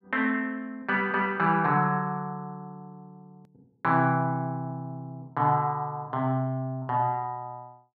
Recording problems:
click at an edit; at 3.5 s

